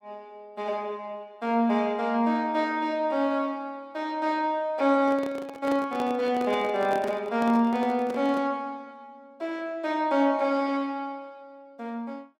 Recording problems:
handling noise; from 5 to 8.5 s; peak -5 dB vs average level

